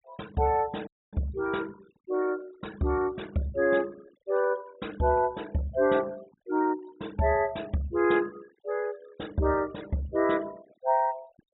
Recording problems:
treble cut off; nothing above 3.8 kHz
noise reduction artefacts; signal-to-artefact ratio 22 dB
audio cutting out; at 1 s

